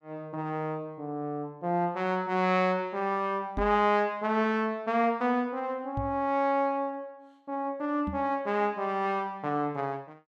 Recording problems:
microphone bump; at 3.5 s, at 6 s and at 8 s; peak -2 dB vs average level

